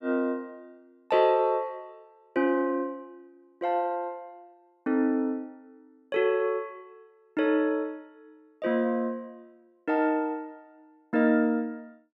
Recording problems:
none

